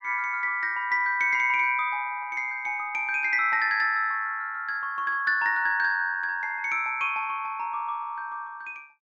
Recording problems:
none

